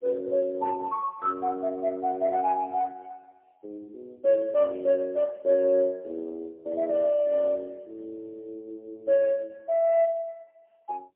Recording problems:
phone line; 300 Hz to 2.9 kHz, AMR-NB, then MP3

